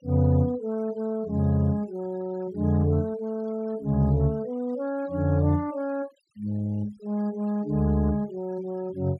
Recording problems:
noise reduction artefacts; signal-to-artefact ratio 26 dB

